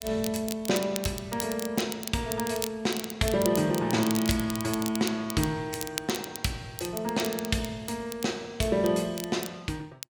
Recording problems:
crackle; vinyl, SNR 9 dB

